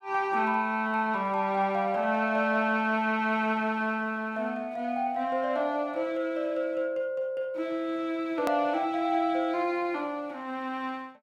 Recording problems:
edit click; at 8.5 s

